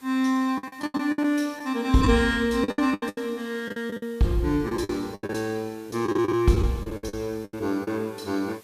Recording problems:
hiss; slope -2 dB per octave, SNR 27 dB
lost packets; 15% of the sound replaced, filled with the last packet

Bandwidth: 14.5 kHz